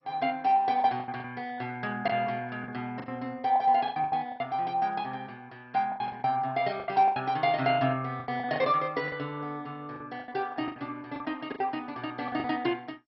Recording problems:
lossy codec; MP2, log-spectral distance 2 dB, nothing above 5.5 kHz
packet loss; 12% of the sound replaced, filled with the last packet

